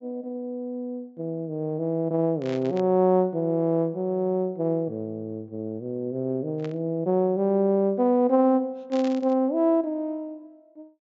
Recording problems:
treble missing; nothing above 8 kHz
burst of static; at 2.5 s, at 6.5 s and at 9 s; peak -12 dB vs average level

